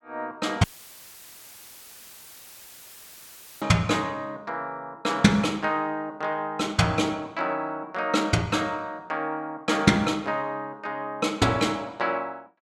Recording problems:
dropout; at 0.5 s for 3 s; filled with static

